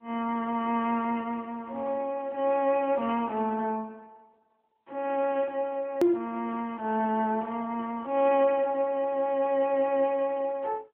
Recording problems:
telephone audio; 280 Hz to 3.3 kHz, AMR-NB
hard cut with a click; at 6 s

